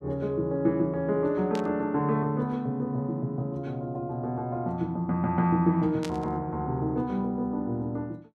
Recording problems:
burst of static; at 1.5 s and at 6 s; peak -6 dB vs average level

